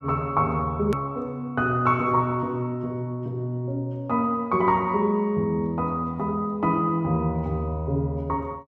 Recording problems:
click at an edit; at 1 s

